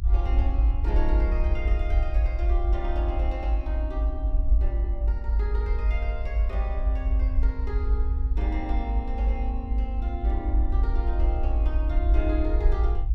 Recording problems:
rumble; below 56 Hz, SNR -9 dB

